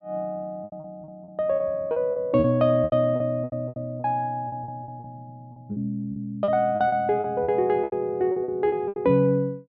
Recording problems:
lost packets; 15% of the sound replaced, filled with repeated pitch periods

